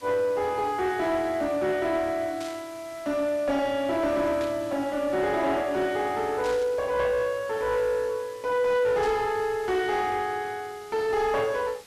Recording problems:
distorted audio; soft clipping, signal-to-distortion ratio 10 dB
hiss; slope 0 dB per octave, SNR 22 dB
burst of static; 4 times, first at 2.5 s; peak -10 dB vs average level

